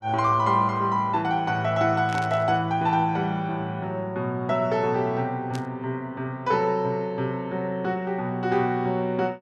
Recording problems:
static burst; at 2 s and at 5.5 s; peak -9 dB vs average level

